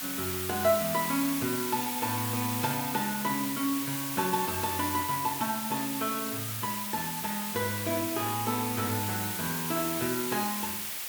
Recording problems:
hiss; slope +2 dB per octave, SNR 1 dB

